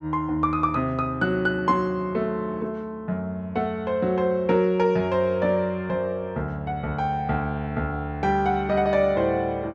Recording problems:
none

